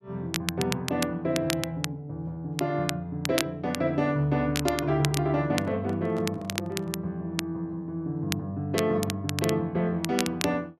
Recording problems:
crackle; vinyl, SNR 7 dB
handling noise; from 5.5 to 7 s; peak -8 dB vs average level

